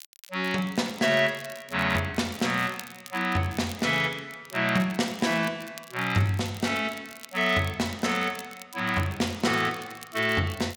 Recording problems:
crackle; vinyl, SNR 19 dB

